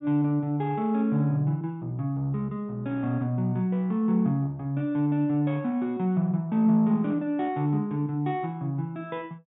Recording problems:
treble cut off; nothing above 4 kHz

